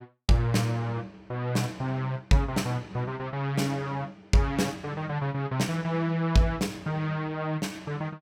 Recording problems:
none

